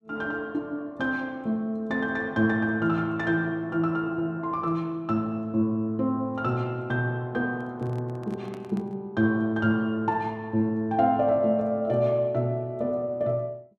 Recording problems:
handling noise; from 7.5 to 9 s; peak -12 dB vs average level

